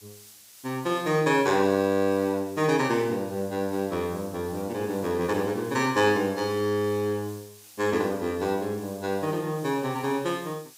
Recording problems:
hiss; slope +2 dB per octave, SNR 21 dB

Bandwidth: 15.5 kHz